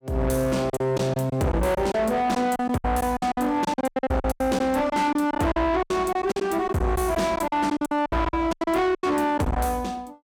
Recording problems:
distorted audio; soft clipping, signal-to-distortion ratio 8 dB
packet loss; 16% of the sound replaced, filled with silence

